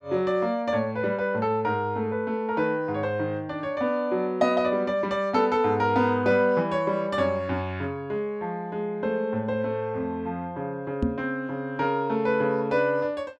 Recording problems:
knock on the microphone; at 11 s; peak +4 dB vs average level

